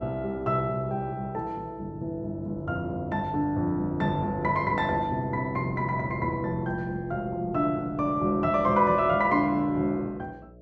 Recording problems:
hum; 60 Hz, harmonics up to 660 Hz, SNR 23 dB

